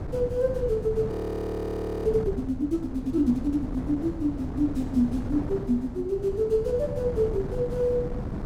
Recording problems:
wind noise; below 320 Hz, SNR 7 dB
frozen audio; at 1 s for 1 s

